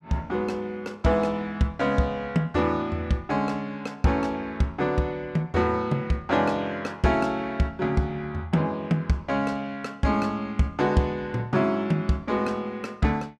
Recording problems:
none

